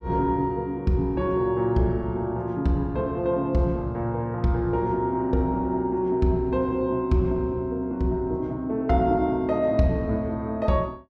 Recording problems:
none

